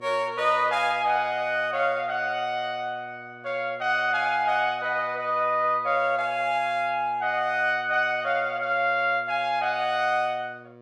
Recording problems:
electrical hum; 60 Hz, harmonics up to 1.8 kHz, SNR 24 dB

